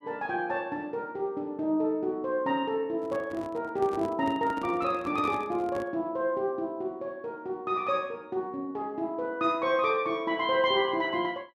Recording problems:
handling noise; from 3 to 6 s; peak -5 dB vs average level

